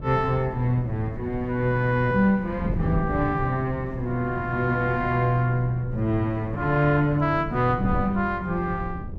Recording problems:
hum; 50 Hz, harmonics up to 1.2 kHz, SNR 24 dB
wind noise; below 190 Hz, SNR 10 dB

